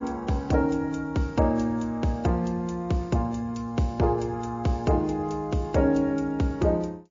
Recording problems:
lossy compression; MP3, log-spectral distance 2 dB

